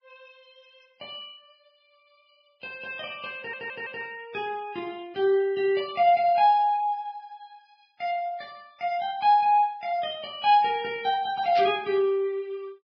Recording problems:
lossy compression; Vorbis, log-spectral distance 2 dB, nothing above 5 kHz
stutter; at 3.5 s
burst of static; at 12 s; peak -7 dB vs average level

